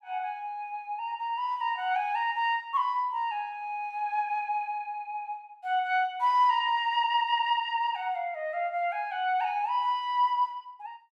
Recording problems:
none

